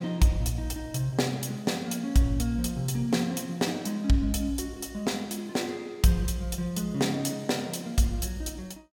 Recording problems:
none

